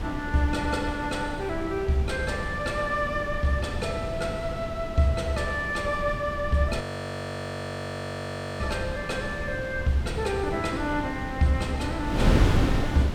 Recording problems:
wind on the microphone; below 300 Hz, SNR 4 dB
audio freezing; at 7 s for 2 s

